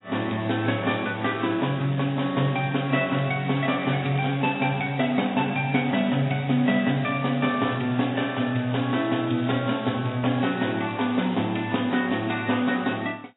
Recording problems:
lossy compression; AAC, log-spectral distance 8 dB, nothing above 3.8 kHz
crackle; from 1 to 5 s and from 7 to 12 s; loose cable, SNR 25 dB

